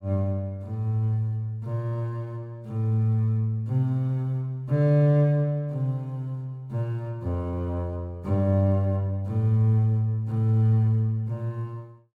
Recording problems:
none

